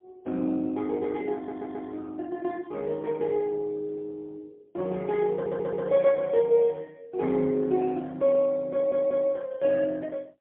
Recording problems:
phone line; 220 Hz to 3.3 kHz, AMR-NB, then MP3
stutter; at 1.5 s, at 5.5 s and at 8.5 s

